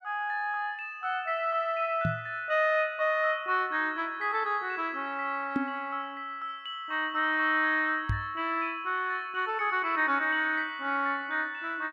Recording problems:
microphone bump; at 2 s, at 5.5 s and at 8 s; peak +3 dB vs average level

